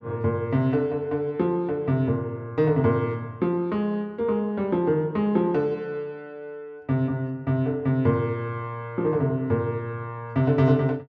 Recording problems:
none

